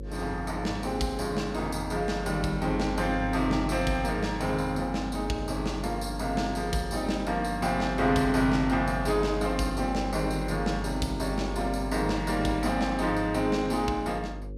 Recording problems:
hum; 50 Hz, harmonics up to 550 Hz, SNR 9 dB

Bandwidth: 14.5 kHz